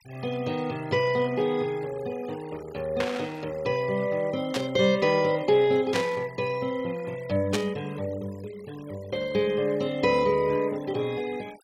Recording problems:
denoising artefacts; signal-to-artefact ratio 22 dB
static burst; 4 times, first at 3 s; peak +1 dB vs average level

